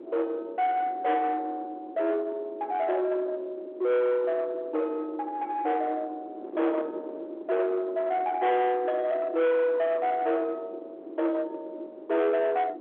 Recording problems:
telephone audio; 950 Hz to 2 kHz, G.711
distortion; soft clipping, signal-to-distortion ratio 11 dB
wind on the microphone; below 630 Hz, SNR 14 dB

